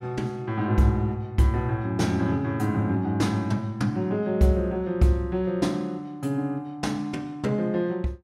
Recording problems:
none

